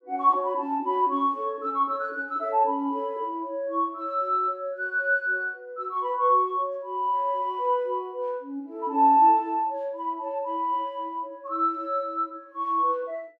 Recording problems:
none

